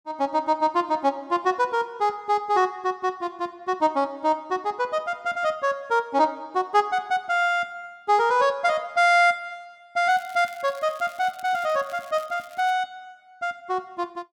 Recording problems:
crackling; from 10 to 13 s; loose cable, SNR 25 dB

